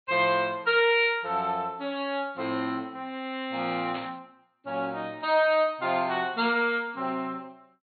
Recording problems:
low-pass filter; nothing above 4.4 kHz
burst of static; at 4 s; peak -9 dB vs average level

